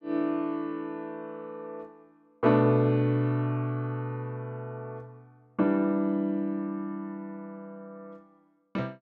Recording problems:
none

